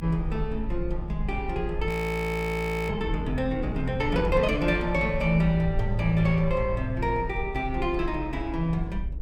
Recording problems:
low-frequency rumble; below 58 Hz, SNR 7 dB
frozen audio; at 2 s for 1 s

